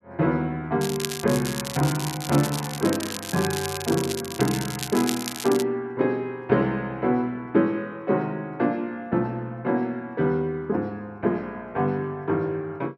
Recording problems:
crackling; from 1 to 5.5 s; loose cable, SNR 7 dB

